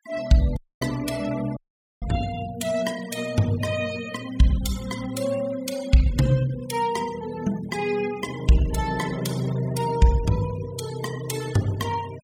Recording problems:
noise reduction artefacts; signal-to-artefact ratio 16 dB
audio cutting out; at 0.5 s and at 1.5 s

